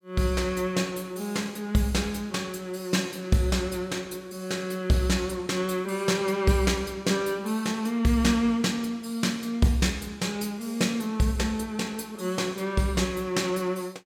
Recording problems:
none

